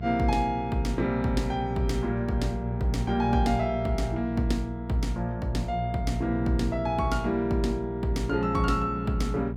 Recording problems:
hum; 60 Hz, harmonics up to 660 Hz, SNR 7 dB

